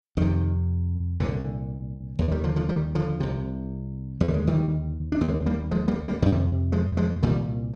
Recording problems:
packet loss; 9% of the sound replaced, filled with repeated pitch periods

